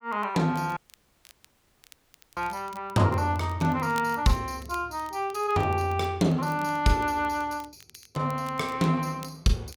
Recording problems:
crackling; vinyl, SNR 25 dB
dropout; at 1 s for 1.5 s

